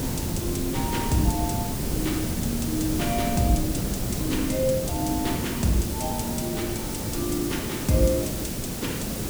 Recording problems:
background hiss; SNR 2 dB
wind on the microphone; below 210 Hz, SNR 7 dB

